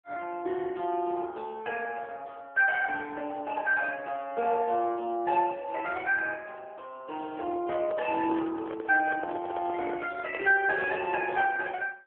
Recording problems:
phone line; 260 Hz to 3.5 kHz, AMR-NB
handling noise; from 7.5 to 11 s; peak -3 dB vs average level

